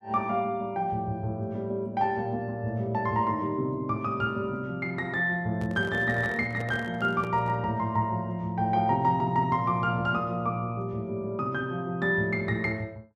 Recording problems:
microphone handling noise; from 5.5 to 7.5 s; peak -6 dB vs average level

